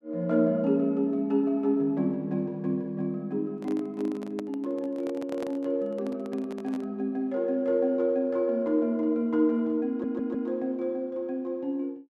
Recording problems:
microphone handling noise; from 3.5 to 7 s; peak -7 dB vs average level
stutter; at 10 s

